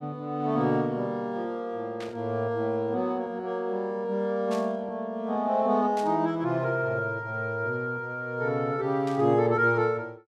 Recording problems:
static burst; 4 times, first at 2 s; peak -10 dB vs average level

